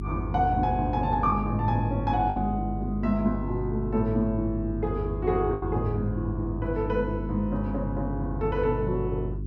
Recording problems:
hum; 50 Hz, harmonics up to 400 Hz, SNR 6 dB
packet loss; 1.7% of the sound replaced, filled with the last packet

